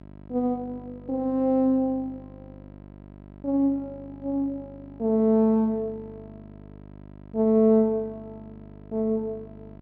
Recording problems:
hum; 50 Hz, harmonics up to 1.1 kHz, SNR 21 dB

